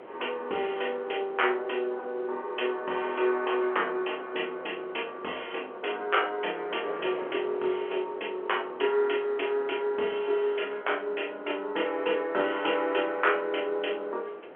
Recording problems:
phone line; 300 Hz to 3.3 kHz, G.711
wind noise; below 850 Hz, SNR 15 dB

